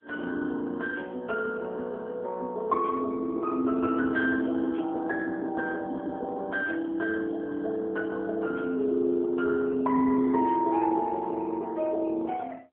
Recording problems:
telephone audio; 220 Hz to 3.1 kHz, AMR-NB

